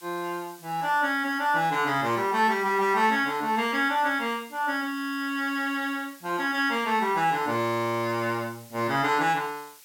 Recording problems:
hiss; slope +3 dB per octave, SNR 23 dB

